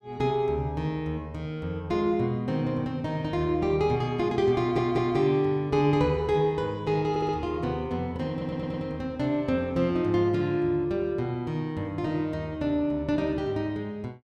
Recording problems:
audio stuttering; at 4.5 s, at 7 s and at 8.5 s

